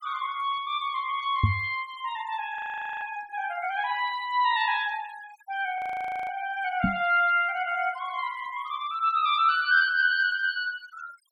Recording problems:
denoising artefacts; signal-to-artefact ratio 22 dB
microphone bump; at 1.5 s and at 7 s; peak +7 dB vs average level
audio freezing; at 2.5 s and at 6 s for 0.5 s

